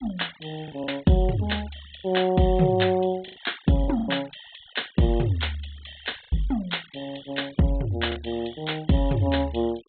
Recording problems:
low-pass filter; nothing above 4 kHz
denoising artefacts; signal-to-artefact ratio 23 dB
packet loss; 4% of the sound replaced, filled with the last packet

